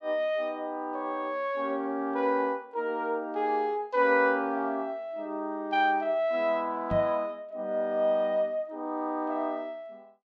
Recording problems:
microphone thump; at 7 s; peak -1 dB vs average level

